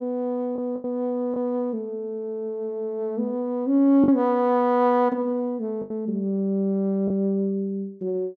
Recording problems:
packet loss; 3% of the sound replaced, filled with the last packet

